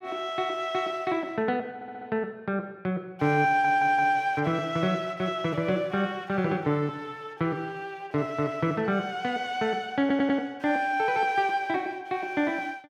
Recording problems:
audio stuttering; at 2 s, at 3.5 s and at 10 s

